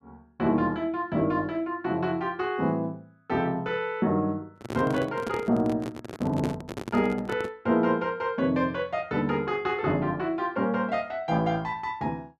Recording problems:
microphone handling noise; from 4.5 to 7.5 s; peak +2 dB vs average level

